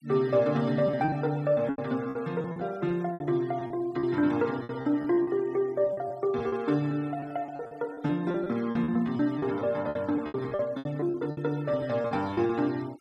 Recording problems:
denoising artefacts; signal-to-artefact ratio 24 dB
packet loss; 13% of the sound replaced, filled with repeated pitch periods

